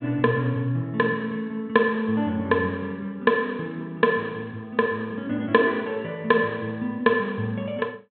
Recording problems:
low-pass filter; nothing above 4 kHz

